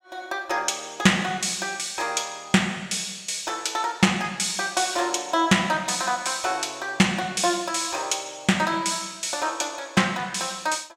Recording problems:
none

